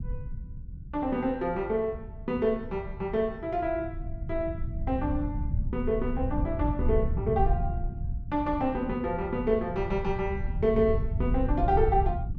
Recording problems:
low-frequency rumble; below 100 Hz, SNR 5 dB

